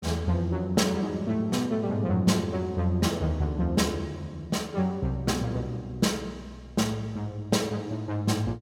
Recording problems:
none

